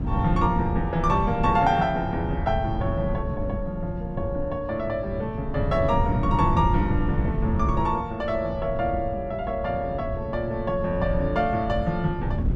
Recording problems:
wind noise; below 150 Hz, SNR 4 dB

